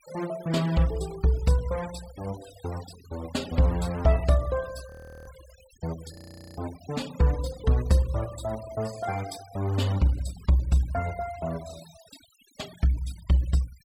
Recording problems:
noise reduction artefacts; signal-to-artefact ratio 19 dB
audio freezing; at 5 s and at 6 s

